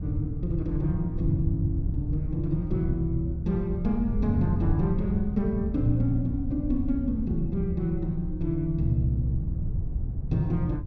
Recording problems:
low-frequency rumble; below 90 Hz, SNR 13 dB
wind noise; below 110 Hz, SNR 5 dB

